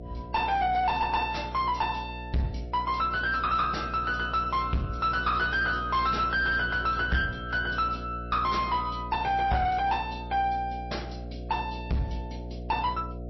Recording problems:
codec artefacts; MP3, log-spectral distance 2 dB, nothing above 5.7 kHz
distorted audio; soft clipping, signal-to-distortion ratio 7 dB
electrical hum; 60 Hz, harmonics up to 720 Hz, SNR 11 dB

